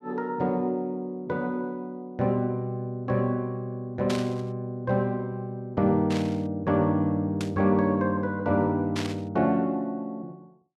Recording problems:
static burst; 4 times, first at 4 s; peak -3 dB vs average level

